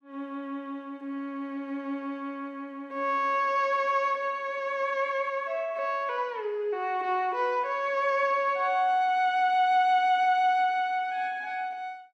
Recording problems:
none

